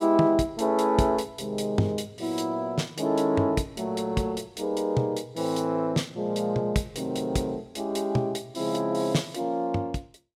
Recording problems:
none

